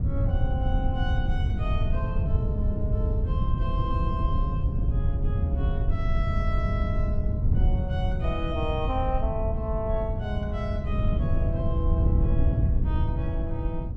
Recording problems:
wind noise; below 110 Hz, SNR -7 dB

